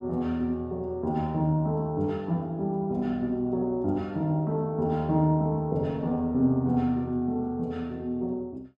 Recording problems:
none

